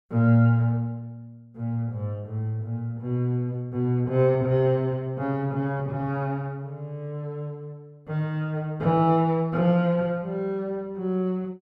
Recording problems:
none

